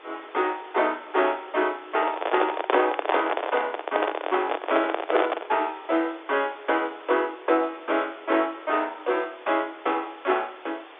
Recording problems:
telephone audio; 280 Hz to 3.6 kHz, G.711
background hiss; SNR 20 dB
handling noise; from 2 to 5.5 s; peak +6 dB vs average level

